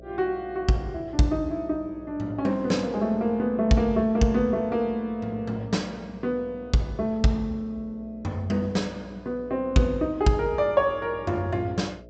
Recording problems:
treble missing; nothing above 8 kHz
hum; 60 Hz, harmonics up to 660 Hz, SNR 21 dB

